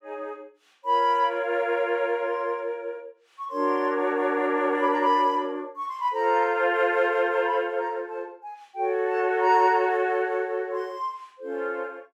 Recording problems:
none

